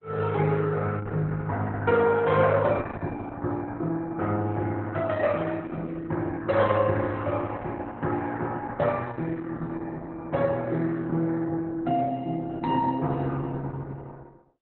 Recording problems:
codec artefacts; Opus, log-spectral distance 3 dB

